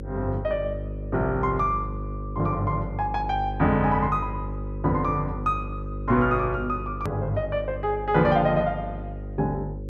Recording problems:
hum; 50 Hz, harmonics up to 550 Hz, SNR 9 dB
hard cut with a click; at 7 s

